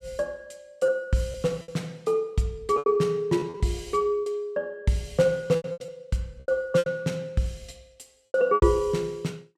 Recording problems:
lost packets; 9% of the sound replaced, filled with repeated pitch periods

